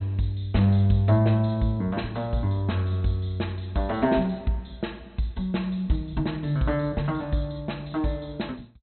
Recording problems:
treble missing; nothing above 4.1 kHz

